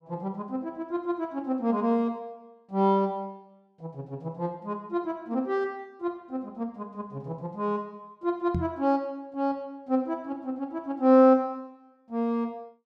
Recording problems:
microphone thump; at 8.5 s; peak +2 dB vs average level

